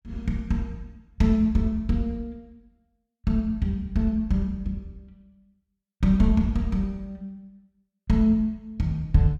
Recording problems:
none

